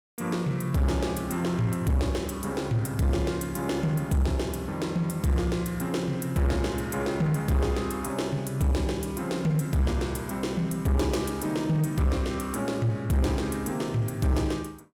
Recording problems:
distorted audio; soft clipping, signal-to-distortion ratio 10 dB

